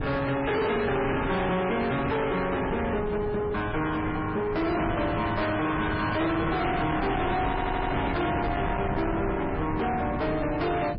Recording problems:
lossy codec; MP3, log-spectral distance 3 dB, nothing above 4.6 kHz
distorted audio; soft clipping, signal-to-distortion ratio 5 dB
wind on the microphone; below 630 Hz, SNR 6 dB
stutter; at 7.5 s

